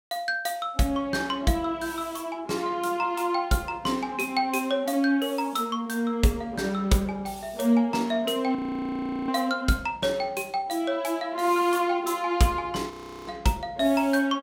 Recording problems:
frozen audio; at 8.5 s for 0.5 s and at 13 s

